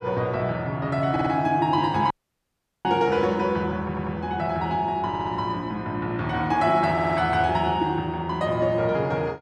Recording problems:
audio stuttering; 4 times, first at 1 s
audio cutting out; at 2 s for 1 s

